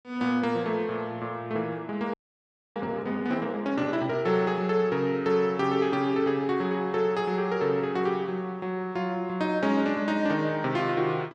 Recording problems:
frozen audio; at 2 s for 0.5 s

